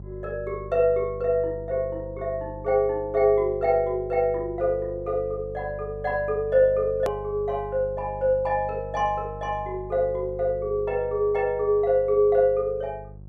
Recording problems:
hum; 50 Hz, harmonics up to 550 Hz, SNR 16 dB
edit click; at 7 s

